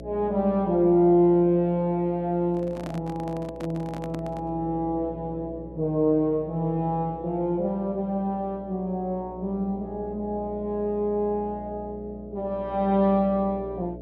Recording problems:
hum; 60 Hz, harmonics up to 660 Hz, SNR 16 dB
handling noise; from 2.5 to 4.5 s; peak -8 dB vs average level

